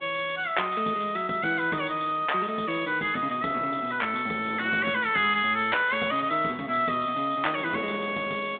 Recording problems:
telephone audio; 190 Hz to 3.6 kHz, G.726
wind on the microphone; below 830 Hz, SNR 21 dB

